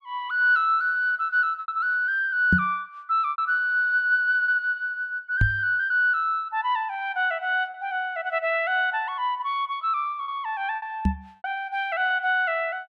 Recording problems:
packet loss; 4% of the sound replaced, filled with repeated pitch periods
microphone thump; at 2.5 s, at 5.5 s and at 11 s; peak +5 dB vs average level

